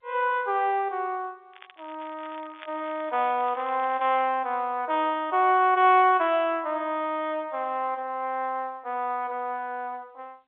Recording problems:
phone line; 320 Hz to 3.6 kHz, G.711
crackling; from 1.5 to 4 s; loose cable, SNR 24 dB

